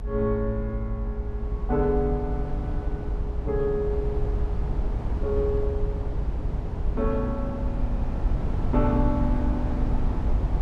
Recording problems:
low-frequency rumble; below 86 Hz, SNR 0 dB

